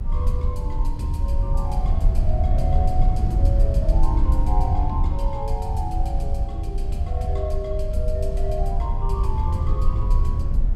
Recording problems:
rumble; below 68 Hz, SNR -6 dB

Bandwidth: 16 kHz